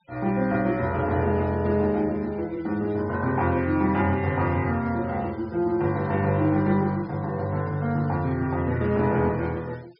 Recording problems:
low-pass filter; nothing above 5.5 kHz
denoising artefacts; signal-to-artefact ratio 27 dB

